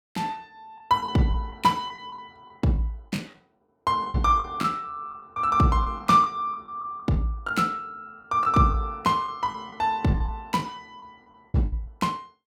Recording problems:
lost packets; 9% of the sound replaced, filled with the last packet

